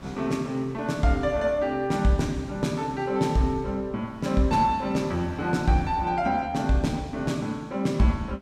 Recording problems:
wind on the microphone; below 1.1 kHz, SNR 24 dB

